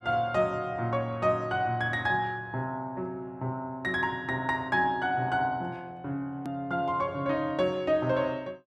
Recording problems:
edit click; at 6.5 s

